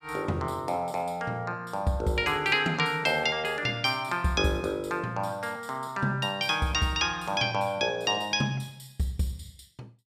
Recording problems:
none

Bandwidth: 15 kHz